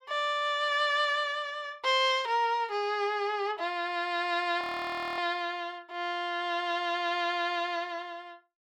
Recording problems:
audio freezing; at 4.5 s for 0.5 s

